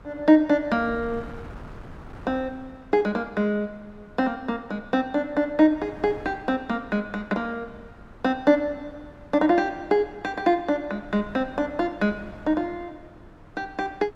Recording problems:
wind on the microphone; below 570 Hz, SNR 21 dB

